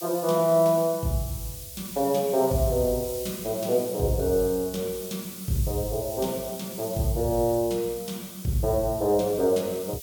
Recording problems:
hiss; SNR 12 dB

